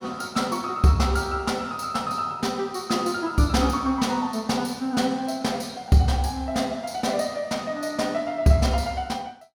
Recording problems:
none

